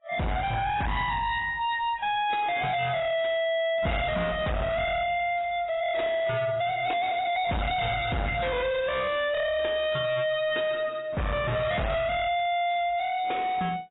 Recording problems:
lossy codec; AAC, log-spectral distance 5 dB, nothing above 3.8 kHz
distortion; hard clipping, signal-to-distortion ratio 5 dB

